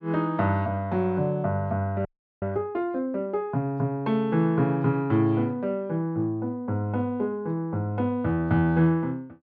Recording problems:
frozen audio; at 2 s

